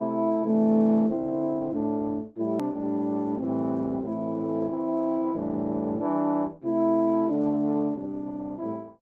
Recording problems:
lossy codec; Opus, log-spectral distance 2 dB, nothing above 13.1 kHz
click at an edit; at 2.5 s

